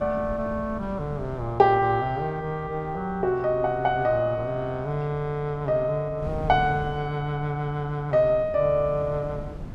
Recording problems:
wind on the microphone; below 210 Hz, SNR 15 dB

